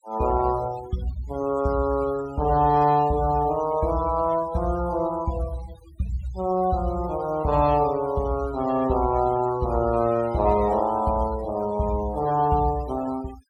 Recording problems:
noise reduction artefacts; signal-to-artefact ratio 20 dB

